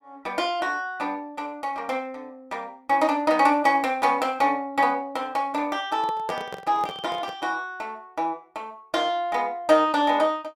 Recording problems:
microphone handling noise; from 6 to 7.5 s; peak -4 dB vs average level

